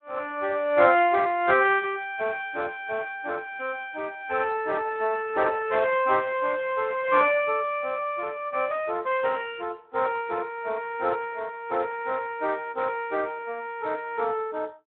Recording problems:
phone line; 280 Hz to 3.5 kHz, Speex

